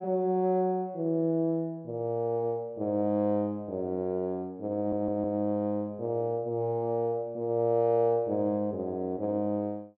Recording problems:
stutter; at 5 s

